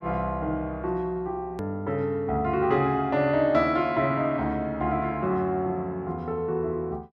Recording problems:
hard cut with a click; at 1.5 s

